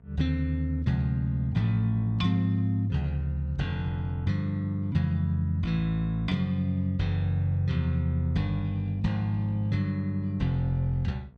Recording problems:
hum; 60 Hz, harmonics up to 960 Hz, SNR 28 dB

